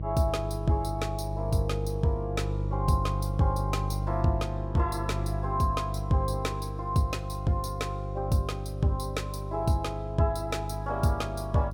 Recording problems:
hum; 50 Hz, harmonics up to 500 Hz, SNR 3 dB

